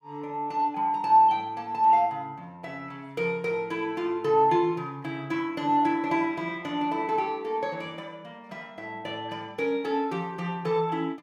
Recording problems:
none

